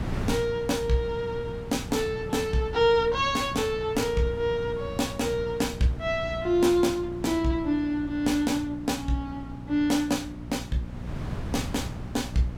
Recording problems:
electrical hum; 60 Hz, harmonics up to 900 Hz, SNR 15 dB
wind on the microphone; below 240 Hz, SNR 13 dB

